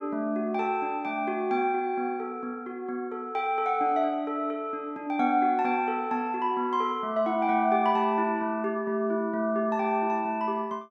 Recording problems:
none

